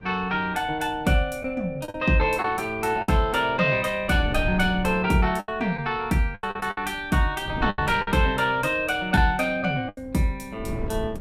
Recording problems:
wind on the microphone; below 180 Hz, SNR 15 dB
lost packets; 6% of the sound replaced, filled with the last packet

